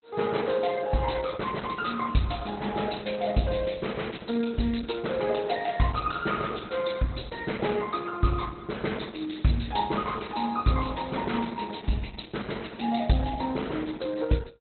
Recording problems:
lossy codec; Opus, log-spectral distance 11 dB, nothing above 4.1 kHz

